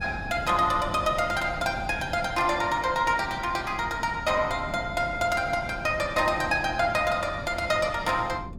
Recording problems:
wind noise; below 260 Hz, SNR 14 dB

